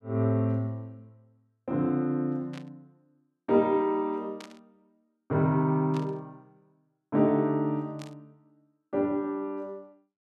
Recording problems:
burst of static; 4 times, first at 2.5 s; peak -12 dB vs average level

